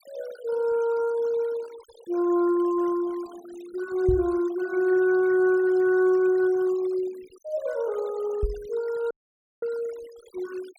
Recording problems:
noise reduction artefacts; signal-to-artefact ratio 23 dB
knock on the microphone; at 4 s and at 8.5 s; peak +1 dB vs average level
audio cutting out; at 9 s for 0.5 s

